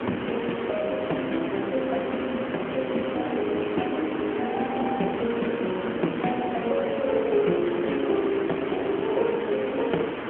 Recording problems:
phone line; 170 Hz to 3.3 kHz, AMR-NB
background hiss; SNR 5 dB

